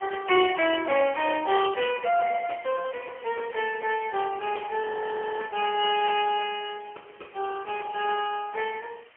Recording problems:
phone line; 320 Hz to 3.2 kHz, AMR-NB, then MP3
hiss; SNR 27 dB
frozen audio; at 5 s for 0.5 s

